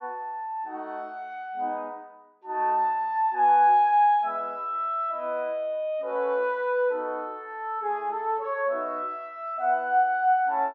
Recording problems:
none

